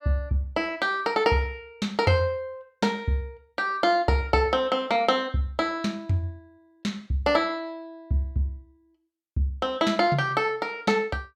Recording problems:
none

